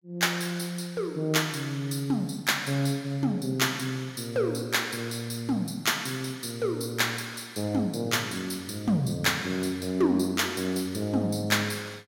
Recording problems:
none

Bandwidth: 16.5 kHz